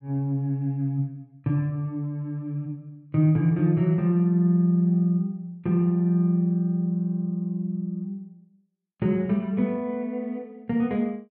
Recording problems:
none

